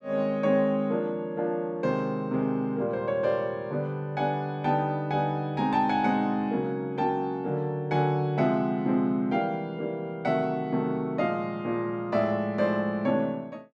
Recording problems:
none

